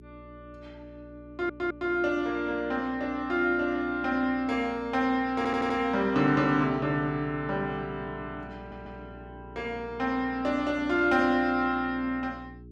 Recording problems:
electrical hum; 60 Hz, harmonics up to 420 Hz, SNR 20 dB
stutter; at 1.5 s, at 5.5 s and at 8.5 s

